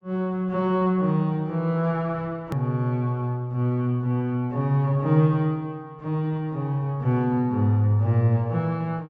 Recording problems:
treble missing; nothing above 8 kHz
edit click; at 2.5 s

